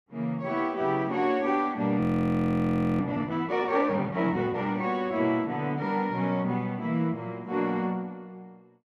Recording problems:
audio freezing; at 2 s for 1 s

